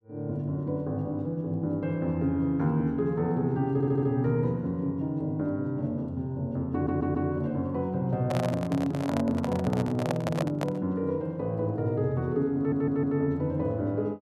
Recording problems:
audio stuttering; at 3.5 s, at 6.5 s and at 13 s
handling noise; from 8 to 11 s; peak +1 dB vs average level

